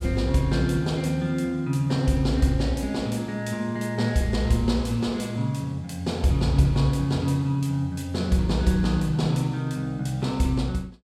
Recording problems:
none

